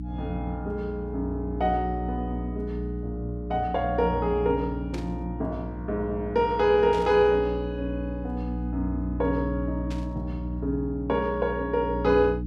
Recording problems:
hum; 60 Hz, harmonics up to 300 Hz, SNR 6 dB
static burst; at 5 s, at 7 s and at 10 s; peak -10 dB vs average level

